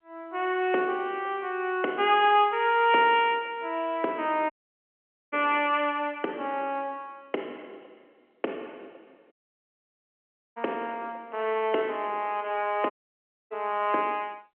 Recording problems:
telephone audio; 260 Hz to 3.2 kHz, G.711
dropout; at 4.5 s for 1 s, at 9.5 s for 1 s and at 13 s for 0.5 s

